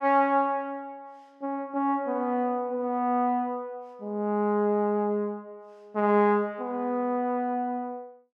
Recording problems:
none

